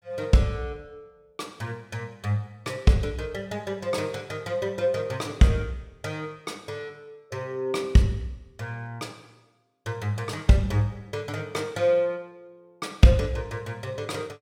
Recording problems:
none

